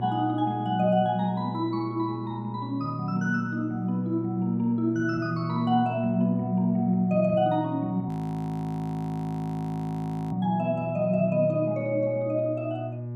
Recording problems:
hum; 60 Hz, harmonics up to 600 Hz, SNR 9 dB
audio freezing; at 8 s for 2 s

